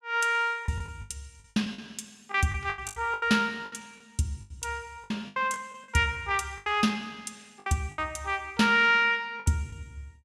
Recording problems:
lost packets; 13% of the sound replaced, filled with the last packet

